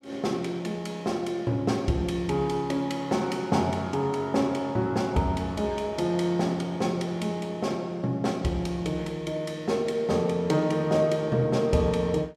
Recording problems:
none

